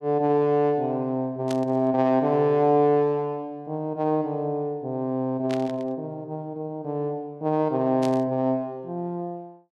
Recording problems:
static burst; at 1.5 s, at 5.5 s and at 8 s; peak -8 dB vs average level

